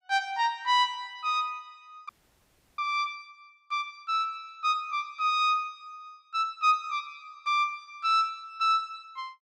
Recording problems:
audio freezing; at 2 s for 0.5 s

